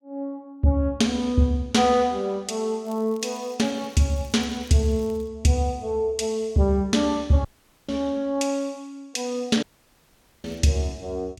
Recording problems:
crackling; from 3 to 5.5 s and at 10 s; loose cable, SNR 29 dB
dropout; at 7.5 s and at 9.5 s for 1 s

